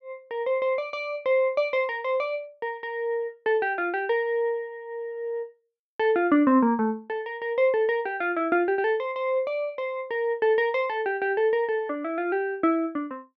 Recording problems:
none

